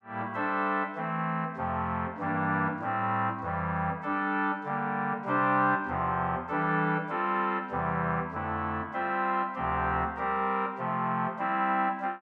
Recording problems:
none

